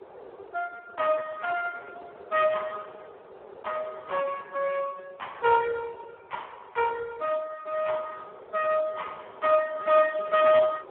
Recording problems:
phone line; 220 Hz to 2.5 kHz, Speex
wind noise; below 760 Hz, SNR 21 dB

